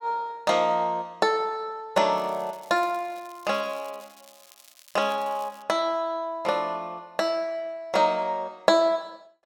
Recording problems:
crackle; from 2 to 5.5 s; loose cable, SNR 25 dB

